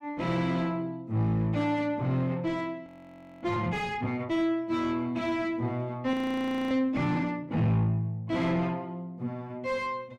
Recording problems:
distortion; soft clipping, signal-to-distortion ratio 10 dB
audio freezing; at 3 s for 0.5 s and at 6 s for 0.5 s

